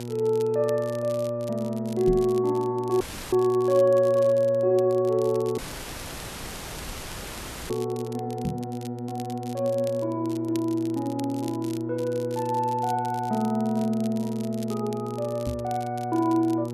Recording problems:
electrical hum; 60 Hz, harmonics up to 960 Hz, SNR 9 dB
crackle; vinyl, SNR 21 dB
knock on the microphone; at 2 s, at 8.5 s and at 15 s; peak +1 dB vs average level
dropout; at 3 s and at 5.5 s for 2 s

